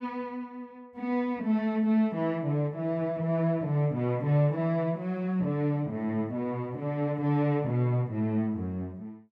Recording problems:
none

